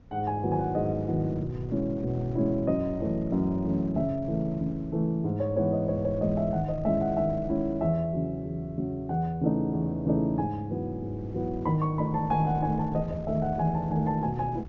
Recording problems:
treble cut off; nothing above 7 kHz
wind on the microphone; below 160 Hz, SNR 16 dB

